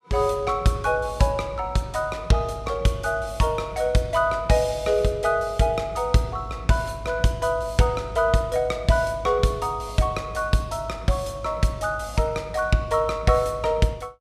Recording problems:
none

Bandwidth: 14.5 kHz